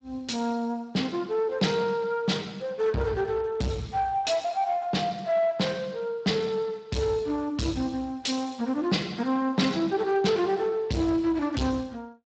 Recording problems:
lossy codec; Speex, log-spectral distance 4 dB, nothing above 7.8 kHz
distortion; soft clipping, signal-to-distortion ratio 7 dB

